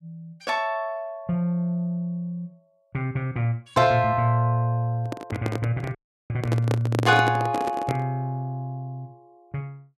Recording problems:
handling noise; from 5 to 8 s; peak +2 dB vs average level
audio cutting out; at 6 s

